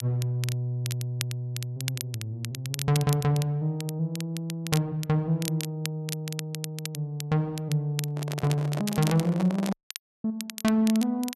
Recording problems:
crackling; vinyl, SNR 10 dB
microphone handling noise; from 8 to 9.5 s; peak -2 dB vs average level
dropout; at 9.5 s for 0.5 s

